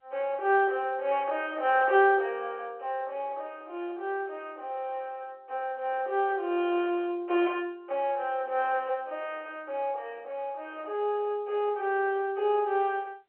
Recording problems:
phone line; 300 Hz to 3.3 kHz, G.711

